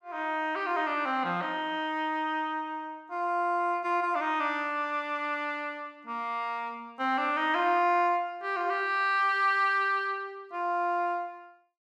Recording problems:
none

